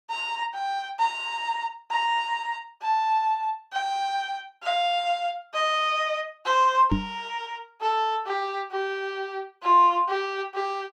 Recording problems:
microphone thump; at 7 s; peak +5 dB vs average level

